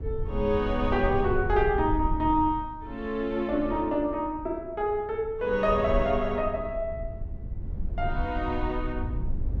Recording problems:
rumble; below 84 Hz, SNR 7 dB

